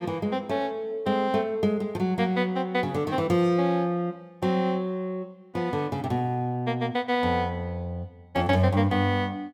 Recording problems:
none

